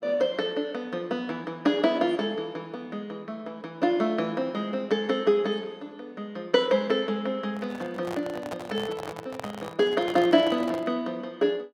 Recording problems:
handling noise; from 7.5 to 11 s; peak -5 dB vs average level

